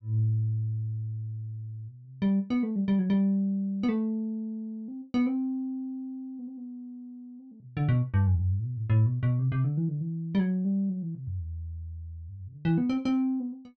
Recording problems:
none

